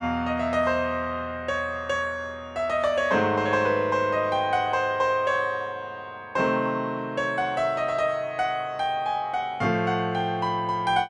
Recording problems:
none

